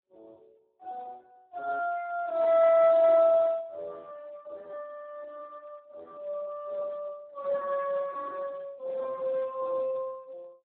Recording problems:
telephone audio; 280 Hz to 2 kHz, Speex

